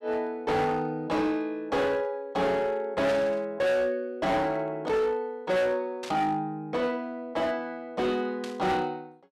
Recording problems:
distorted audio; hard clipping, signal-to-distortion ratio 8 dB
static burst; at 3 s, at 6 s and at 8.5 s; peak -7 dB vs average level

